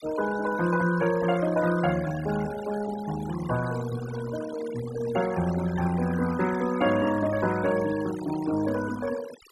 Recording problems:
denoising artefacts; signal-to-artefact ratio 13 dB

